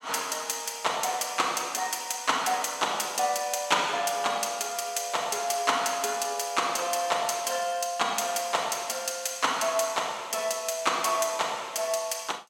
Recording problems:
none

